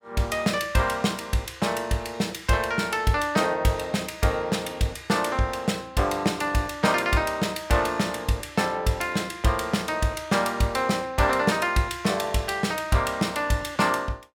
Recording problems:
none

